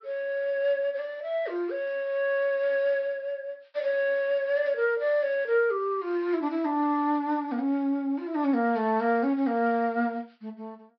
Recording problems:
treble missing; nothing above 5.5 kHz

